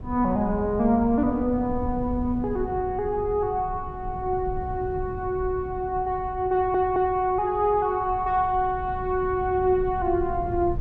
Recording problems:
wind on the microphone; below 120 Hz, SNR 12 dB
audio stuttering; at 6.5 s

